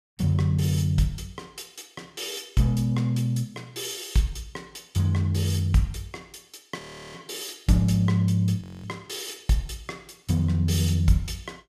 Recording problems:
frozen audio; at 7 s and at 8.5 s

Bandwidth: 15 kHz